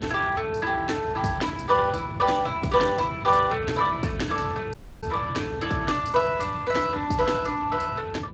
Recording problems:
codec artefacts; Speex, log-spectral distance 5 dB, nothing above 7.6 kHz
wind noise; below 210 Hz, SNR 12 dB
audio cutting out; at 4.5 s

